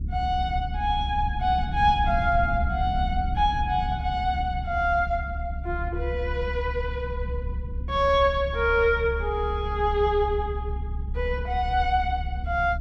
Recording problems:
rumble; below 70 Hz, strongest tone 68 Hz, SNR 6 dB

